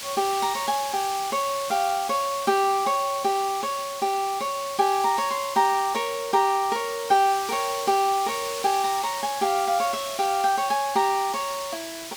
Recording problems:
background hiss; slope +2 dB per octave, SNR 10 dB

